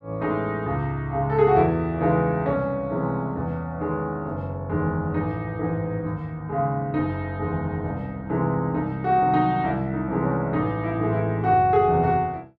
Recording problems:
none

